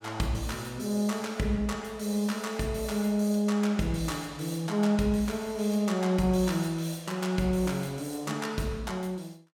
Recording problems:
none

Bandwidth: 17 kHz